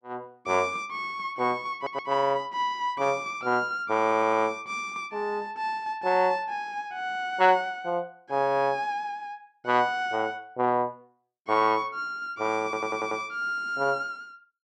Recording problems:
stutter; at 2 s, at 4 s and at 13 s

